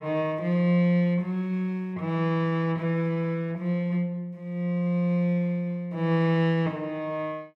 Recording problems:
none

